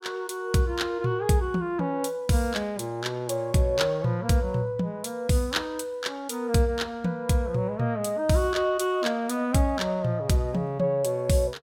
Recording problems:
none

